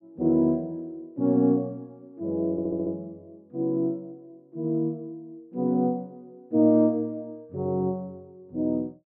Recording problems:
stutter; at 2.5 s

